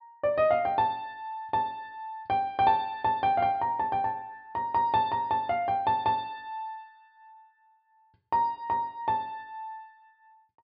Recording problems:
low-pass filter; nothing above 5.5 kHz

